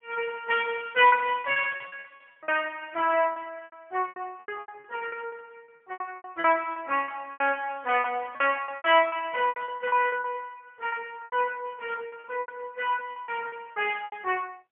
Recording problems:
telephone audio; 280 Hz to 3.2 kHz, AMR-NB, then MP3
packet loss; 16% of the sound replaced, filled with repeated pitch periods

